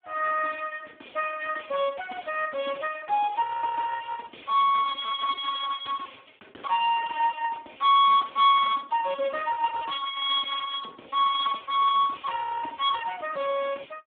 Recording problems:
telephone audio; 260 Hz to 2.8 kHz, Speex

